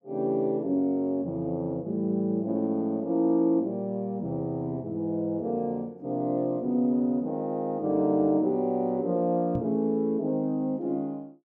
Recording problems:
knock on the microphone; at 9.5 s; peak -2 dB vs average level

